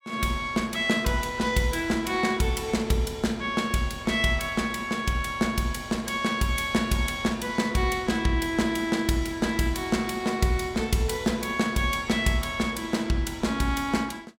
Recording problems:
none

